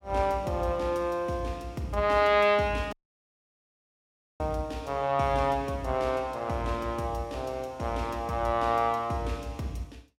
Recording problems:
dropout; at 3 s for 1.5 s

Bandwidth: 16.5 kHz